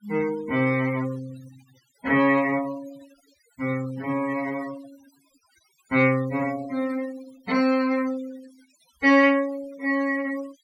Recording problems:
denoising artefacts; signal-to-artefact ratio 21 dB

